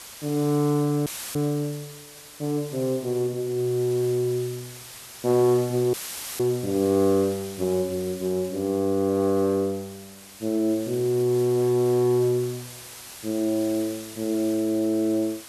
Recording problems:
background hiss; slope 0 dB per octave, SNR 16 dB
audio cutting out; at 1 s and at 6 s; filled with static

